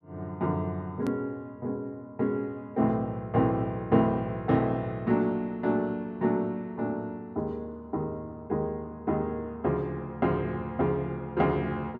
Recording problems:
edit click; at 1 s

